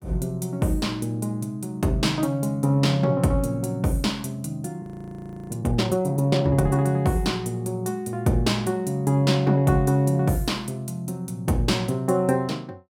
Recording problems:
audio freezing; at 5 s for 0.5 s

